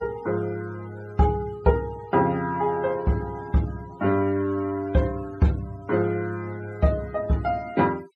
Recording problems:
noise reduction artefacts; signal-to-artefact ratio 22 dB

